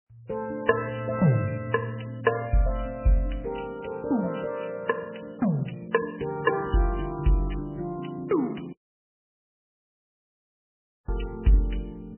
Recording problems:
codec artefacts; MP3, log-spectral distance 6 dB, nothing above 2.9 kHz
dropout; at 8.5 s for 2.5 s

